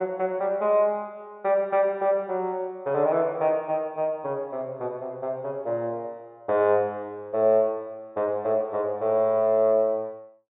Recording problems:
treble cut off; nothing above 4 kHz

